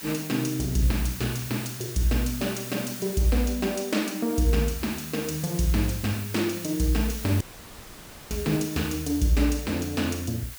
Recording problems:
background hiss; slope +1 dB per octave, SNR 11 dB
dropout; at 7.5 s for 1 s

